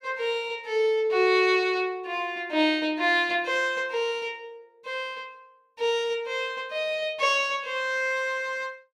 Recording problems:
none

